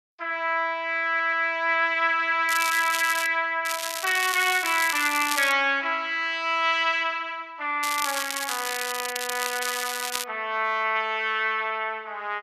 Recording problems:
stutter; at 1 s
crackling; at 2.5 s, from 3.5 to 5.5 s and from 8 to 10 s; loose cable, SNR 6 dB

